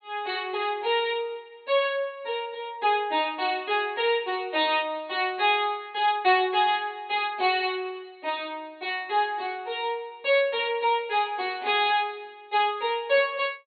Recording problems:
treble cut off; nothing above 4.3 kHz

